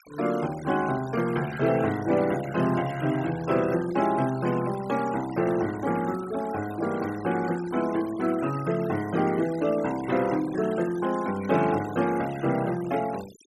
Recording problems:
noise reduction artefacts; signal-to-artefact ratio 17 dB

